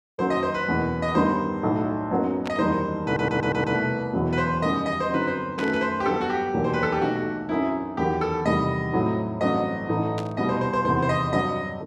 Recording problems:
static burst; at 2.5 s, at 5.5 s and at 10 s; peak -7 dB vs average level
stutter; at 3 s

